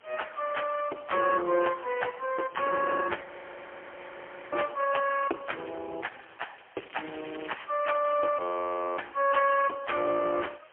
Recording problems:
phone line; 300 Hz to 3.2 kHz, AMR-NB, then MP3
hiss; SNR 28 dB
wind on the microphone; below 1.3 kHz, SNR 24 dB
audio freezing; at 3 s for 1.5 s and at 8.5 s for 0.5 s
crackle; at 7 s; loose cable, SNR 17 dB

